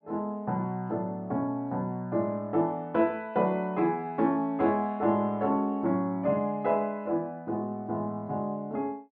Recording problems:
none

